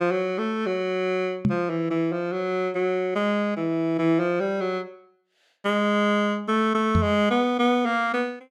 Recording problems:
microphone thump; at 1.5 s and at 7 s; peak +5 dB vs average level

